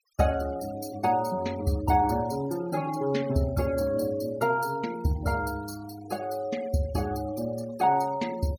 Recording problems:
noise reduction artefacts; signal-to-artefact ratio 18 dB

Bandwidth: 17.5 kHz